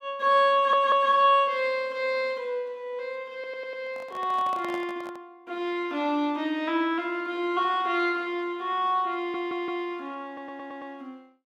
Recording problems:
audio stuttering; 4 times, first at 0.5 s
handling noise; from 4 to 5 s; peak -9 dB vs average level

